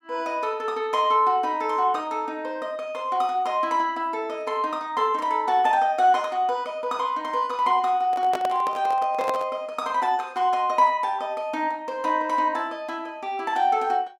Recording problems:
handling noise; from 8 to 9.5 s; peak -1 dB vs average level

